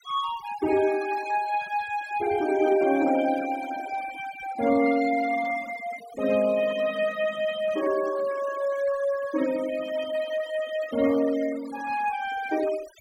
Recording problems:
denoising artefacts; signal-to-artefact ratio 16 dB

